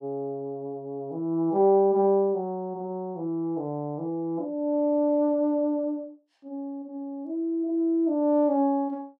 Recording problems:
none

